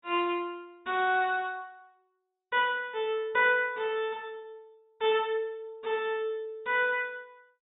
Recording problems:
treble missing; nothing above 4 kHz

